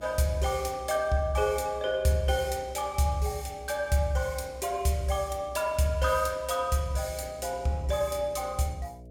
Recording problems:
hum; 60 Hz, harmonics up to 660 Hz, SNR 22 dB

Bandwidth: 17 kHz